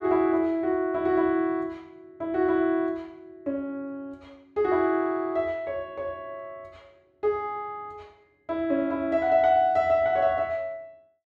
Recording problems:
none

